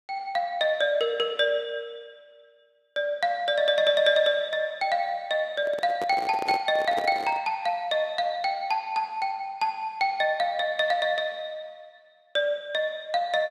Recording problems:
microphone handling noise; from 5.5 to 7.5 s; peak -3 dB vs average level

